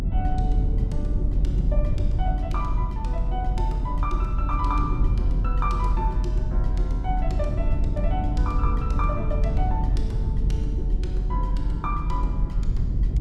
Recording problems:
rumble; below 74 Hz, strongest tone 42 Hz, SNR -7 dB

